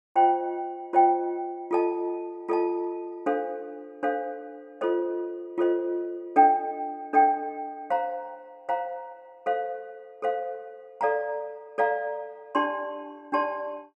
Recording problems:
none

